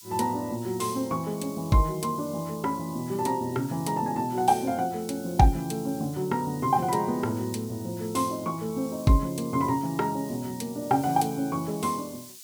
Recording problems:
background hiss; SNR 17 dB

